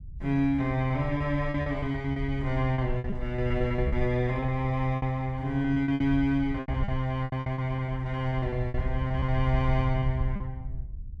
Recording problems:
low-frequency rumble; below 76 Hz, SNR 8 dB
packet loss; 13% of the sound replaced, filled with repeated pitch periods

